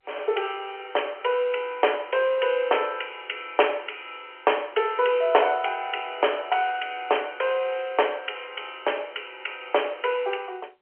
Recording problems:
phone line; 340 Hz to 3.2 kHz, G.711

